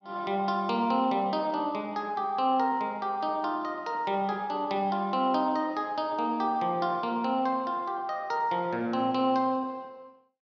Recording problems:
none

